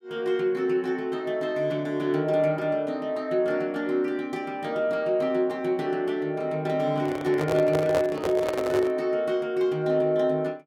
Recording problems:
microphone handling noise; from 7 to 9 s; peak 0 dB vs average level

